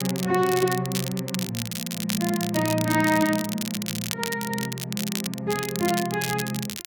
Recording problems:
crackle; vinyl, SNR 6 dB

